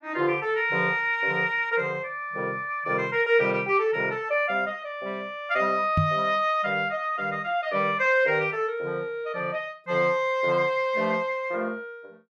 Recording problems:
microphone bump; at 6 s; peak +4 dB vs average level

